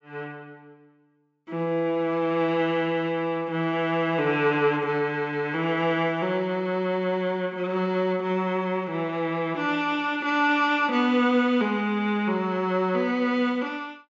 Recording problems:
treble missing; nothing above 8 kHz

